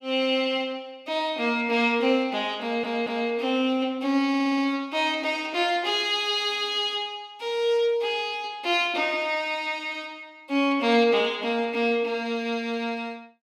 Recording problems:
stutter; at 2.5 s and at 4.5 s

